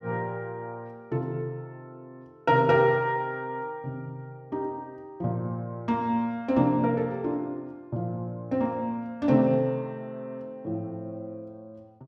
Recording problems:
none

